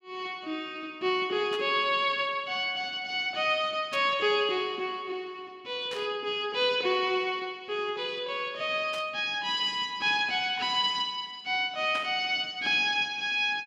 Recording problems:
burst of static; 5 times, first at 1.5 s; peak -8 dB vs average level

